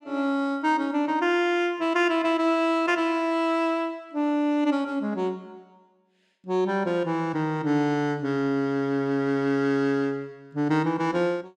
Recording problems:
none

